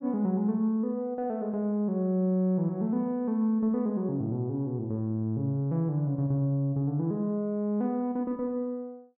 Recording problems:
none

